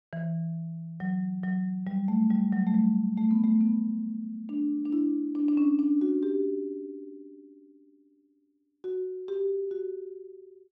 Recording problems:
none

